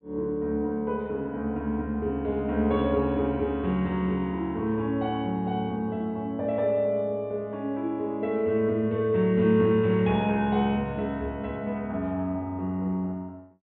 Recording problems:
treble missing; nothing above 4 kHz

